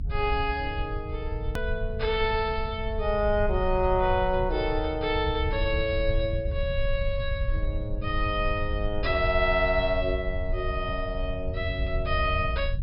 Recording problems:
low-pass filter; nothing above 5.5 kHz
low-frequency rumble; below 78 Hz, SNR 5 dB
click at an edit; at 1.5 s

